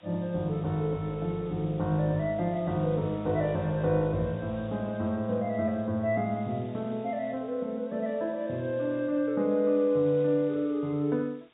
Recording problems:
low-pass filter; nothing above 4 kHz
hiss; SNR 28 dB

